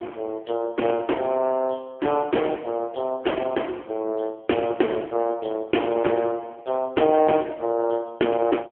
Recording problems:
phone line; 260 Hz to 3.2 kHz, AMR-NB

